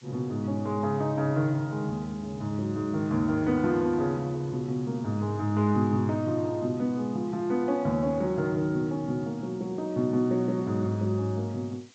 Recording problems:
treble missing; nothing above 8 kHz
hiss; slope +3 dB per octave, SNR 27 dB

